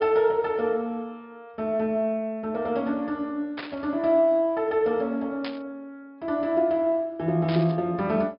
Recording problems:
treble cut off; nothing above 5.5 kHz
burst of static; at 3.5 s, at 5.5 s and at 7.5 s; peak -6 dB vs average level

